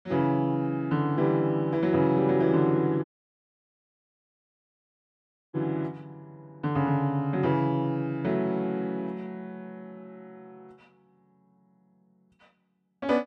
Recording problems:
audio cutting out; at 3 s for 2.5 s

